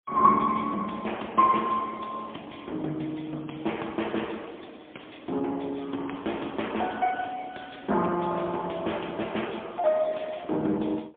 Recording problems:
telephone audio; 220 Hz to 3.4 kHz, AMR-NB, then MP3

